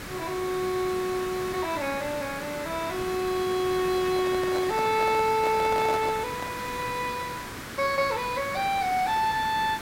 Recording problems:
background hiss; SNR 9 dB
handling noise; from 4 to 6.5 s; peak -2 dB vs average level

